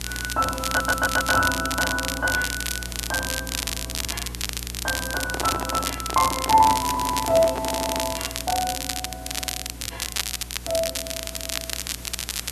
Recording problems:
hum; 60 Hz, harmonics up to 480 Hz, SNR 14 dB
background hiss; slope -1 dB per octave, SNR 17 dB
crackle; vinyl, SNR 4 dB
stutter; at 0.5 s, at 7 s and at 7.5 s
microphone handling noise; from 5 to 8 s; peak -2 dB vs average level

